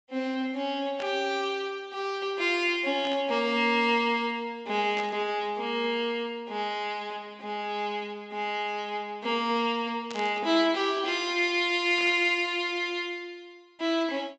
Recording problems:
treble cut off; nothing above 8 kHz
static burst; 5 times, first at 1 s; peak -8 dB vs average level

